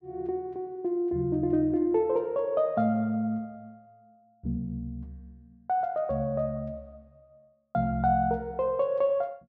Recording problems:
none

